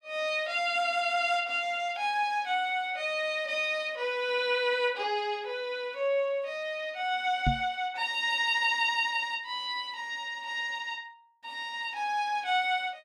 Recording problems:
knock on the microphone; at 7.5 s; peak +4 dB vs average level

